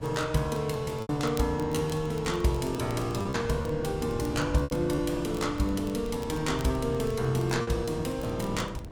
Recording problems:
wind on the microphone; below 230 Hz, SNR 12 dB
crackle; vinyl, SNR 23 dB
packet loss; 5% of the sound replaced, filled with repeated pitch periods

